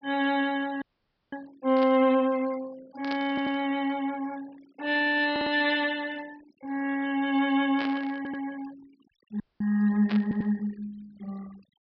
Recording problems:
treble missing; nothing above 5.5 kHz
denoising artefacts; signal-to-artefact ratio 22 dB
frozen audio; at 1 s for 0.5 s and at 9.5 s
static burst; 4 times, first at 2 s; peak -6 dB vs average level
audio stuttering; 4 times, first at 3.5 s

